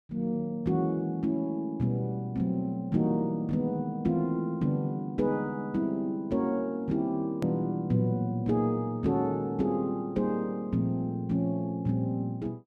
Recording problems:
edit click; at 7.5 s

